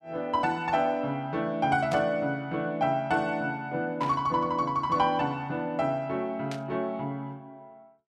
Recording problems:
burst of static; at 2 s, at 4 s and at 6.5 s; peak -7 dB vs average level

